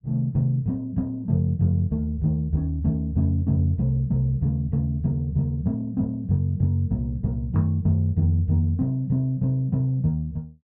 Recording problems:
none

